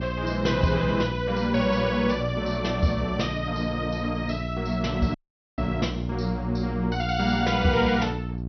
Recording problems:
low-pass filter; nothing above 5.9 kHz
mains hum; 60 Hz, harmonics up to 720 Hz, SNR 6 dB
audio cutting out; at 5 s

